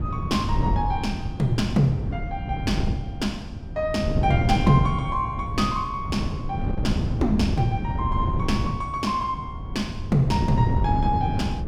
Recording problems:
wind noise; below 180 Hz, SNR 2 dB

